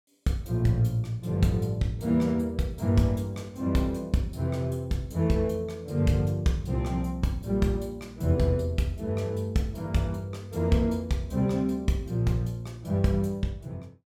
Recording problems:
none

